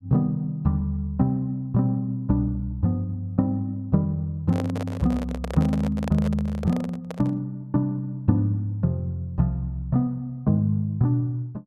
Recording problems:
microphone handling noise; from 4.5 to 7.5 s; peak -4 dB vs average level

